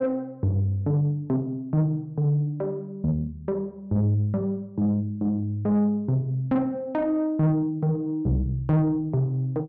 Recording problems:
distorted audio; soft clipping, signal-to-distortion ratio 10 dB

